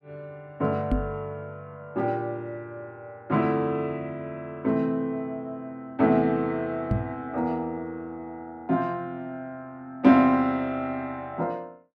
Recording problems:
microphone bump; at 1 s and at 7 s; peak +5 dB vs average level

